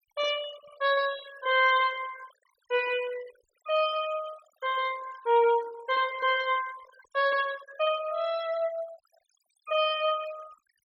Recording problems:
denoising artefacts; signal-to-artefact ratio 19 dB

